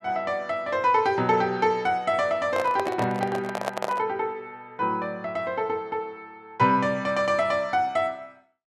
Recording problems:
handling noise; from 2.5 to 4 s; peak +1 dB vs average level

